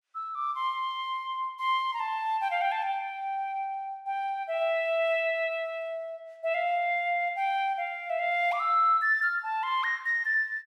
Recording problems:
none

